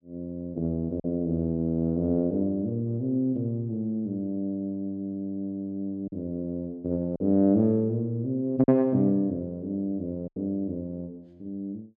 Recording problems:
lost packets; 2% of the sound replaced, filled with silence

